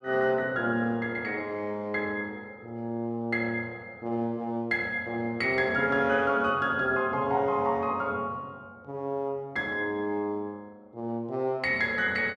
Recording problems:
none

